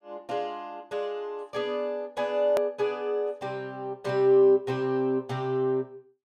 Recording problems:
click at an edit; at 2.5 s

